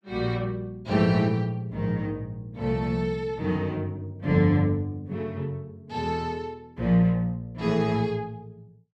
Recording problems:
none

